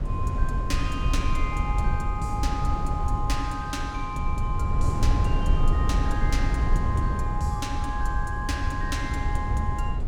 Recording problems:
low-frequency rumble; below 92 Hz, SNR -3 dB

